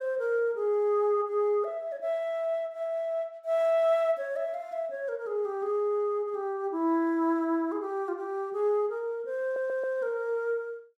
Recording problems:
audio stuttering; at 9.5 s

